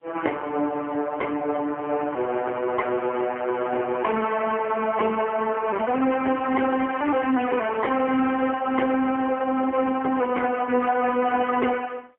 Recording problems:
phone line; 260 Hz to 3.1 kHz, AMR-NB, then MP3

